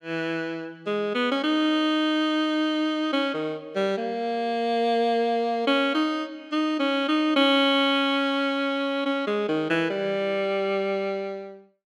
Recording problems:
none

